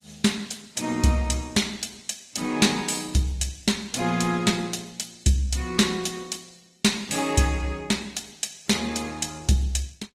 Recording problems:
lossy compression; Opus, log-spectral distance 5 dB, nothing above 18.9 kHz

